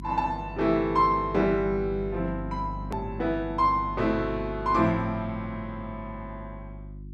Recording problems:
hum; 50 Hz, harmonics up to 350 Hz, SNR 12 dB
edit click; at 3 s

